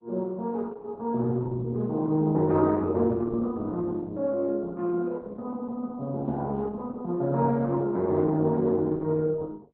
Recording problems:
lossy codec; Opus, log-spectral distance 2 dB

